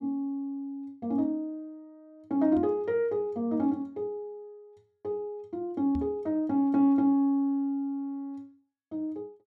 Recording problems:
microphone thump; at 2.5 s and at 6 s; peak -3 dB vs average level

